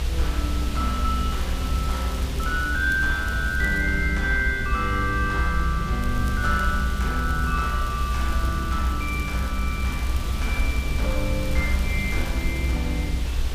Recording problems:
hum; 50 Hz, harmonics up to 450 Hz, SNR 13 dB
hiss; slope -2 dB per octave, SNR 10 dB
low-frequency rumble; below 64 Hz, strongest tone 62 Hz, SNR 2 dB
crackle; from 1.5 to 4 s and from 6 to 13 s; loose cable, SNR 20 dB

